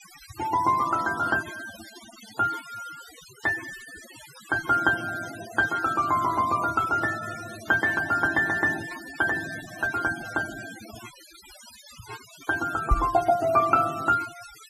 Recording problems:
noise reduction artefacts; signal-to-artefact ratio 16 dB
microphone bump; at 13 s; peak +5 dB vs average level

